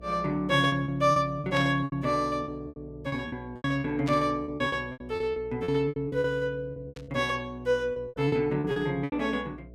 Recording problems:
hum; 60 Hz, harmonics up to 660 Hz, SNR 21 dB
packet loss; 16% of the sound replaced, filled with repeated pitch periods
burst of static; at 1.5 s, at 4 s and at 7 s; peak -5 dB vs average level

